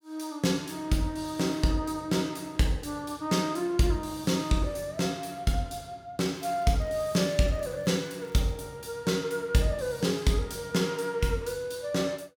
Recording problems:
crackle; from 6 to 8.5 s; loose cable, SNR 29 dB

